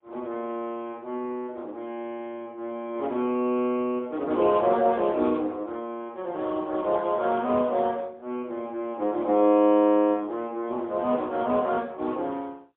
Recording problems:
telephone audio; 220 Hz to 3.5 kHz, AMR-NB, then MP3

